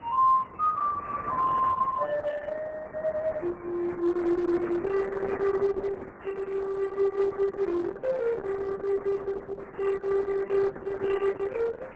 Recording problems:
codec artefacts; MP3, then Opus, log-spectral distance 3 dB, nothing above 8 kHz
wind on the microphone; below 1.4 kHz, SNR 19 dB

